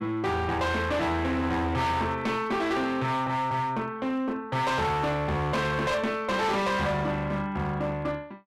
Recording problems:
distorted audio; hard clipping, uneven, signal-to-distortion ratio 8 dB

